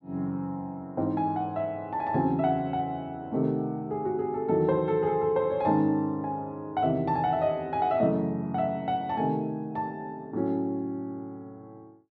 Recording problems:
none

